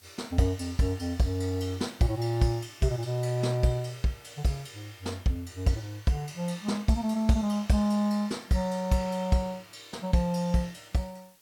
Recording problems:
background hiss; slope 0 dB per octave, SNR 28 dB

